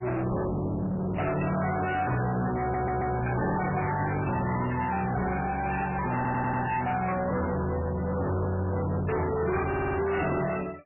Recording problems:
lossy compression; AAC, then MP3, log-spectral distance 5 dB, nothing above 2.7 kHz
distorted audio; soft clipping, signal-to-distortion ratio 6 dB
microphone handling noise; from 2 to 4.5 s; peak -4 dB vs average level
stutter; at 2.5 s, at 6 s and at 9.5 s

